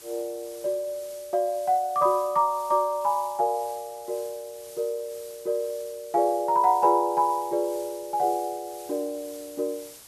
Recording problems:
hiss; slope 0 dB per octave, SNR 19 dB

